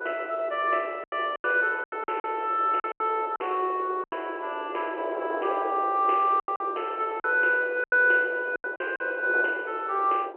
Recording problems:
phone line; 320 Hz to 3.1 kHz, G.711
wind noise; below 680 Hz, SNR 12 dB
packet loss; 9% of the sound replaced, filled with silence

